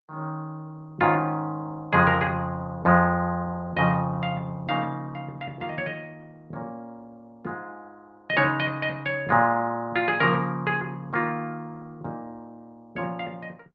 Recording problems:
lossy codec; Opus, log-spectral distance 2 dB

